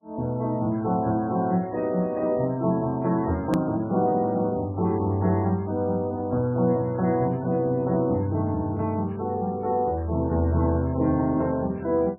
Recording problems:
lossy codec; MP3, log-spectral distance 2 dB, nothing above 13.1 kHz
hard cut with a click; at 3.5 s

